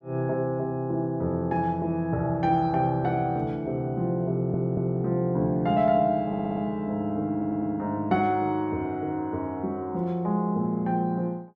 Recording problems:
audio stuttering; at 4.5 s, at 6.5 s and at 7.5 s

